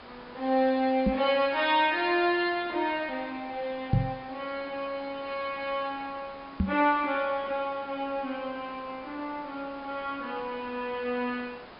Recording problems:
treble missing; nothing above 5.2 kHz
background hiss; SNR 18 dB
knock on the microphone; at 1 s, at 4 s and at 6.5 s; peak +8 dB vs average level

